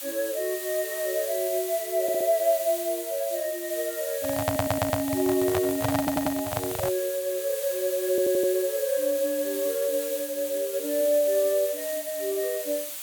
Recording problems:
hiss; slope +2 dB per octave, SNR 7 dB
audio stuttering; 4 times, first at 2 s
handling noise; from 4 to 7 s; peak +4 dB vs average level

